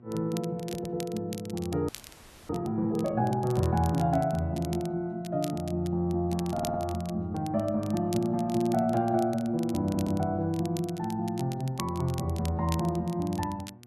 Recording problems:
hum; 60 Hz, harmonics up to 1.1 kHz, SNR 24 dB
crackling; vinyl, SNR 17 dB
stutter; at 0.5 s, at 6.5 s and at 10 s
audio freezing; at 2 s for 0.5 s

